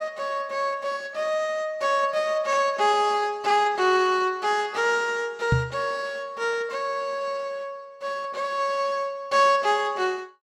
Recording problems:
knock on the microphone; at 5.5 s; peak +6 dB vs average level

